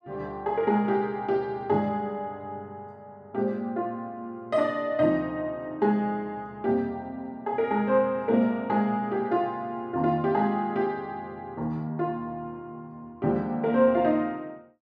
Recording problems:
none

